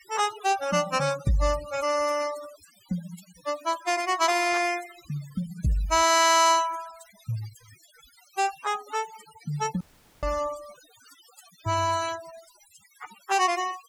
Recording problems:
denoising artefacts; signal-to-artefact ratio 16 dB
dropout; at 10 s

